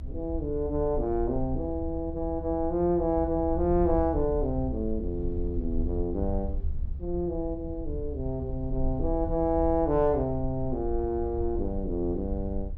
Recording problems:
low-frequency rumble; below 72 Hz, SNR 7 dB

